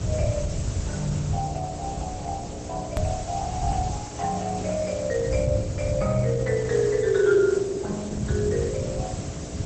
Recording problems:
codec artefacts; Opus, log-spectral distance 12 dB, nothing above 13.3 kHz
hum; 60 Hz, harmonics up to 720 Hz, SNR 14 dB
background hiss; slope -1 dB per octave, SNR 12 dB
rumble; below 140 Hz, SNR 5 dB
click at an edit; at 3 s

